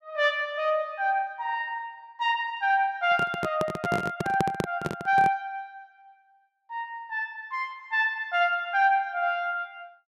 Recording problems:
handling noise; from 3 to 5.5 s; peak +3 dB vs average level

